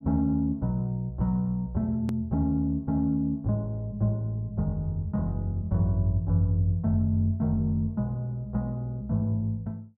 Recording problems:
click at an edit; at 2 s

